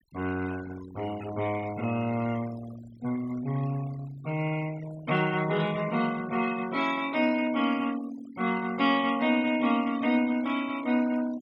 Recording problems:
denoising artefacts; signal-to-artefact ratio 17 dB

